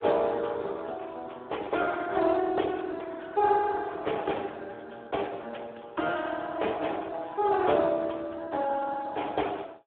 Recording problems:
phone line; 300 Hz to 3.6 kHz, Speex

